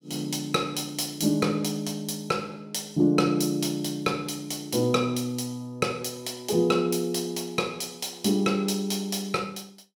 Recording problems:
none

